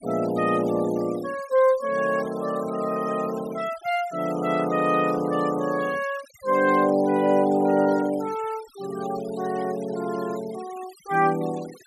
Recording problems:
noise reduction artefacts; signal-to-artefact ratio 20 dB

